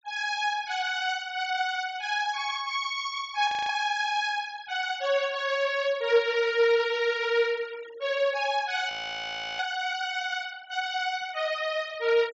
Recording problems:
treble missing; nothing above 8 kHz
noise reduction artefacts; signal-to-artefact ratio 22 dB
frozen audio; at 3.5 s and at 9 s for 0.5 s

